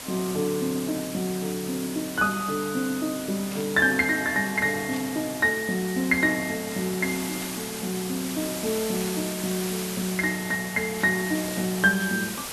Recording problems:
hiss; slope -1 dB per octave, SNR 8 dB
static burst; 5 times, first at 3.5 s; peak -11 dB vs average level

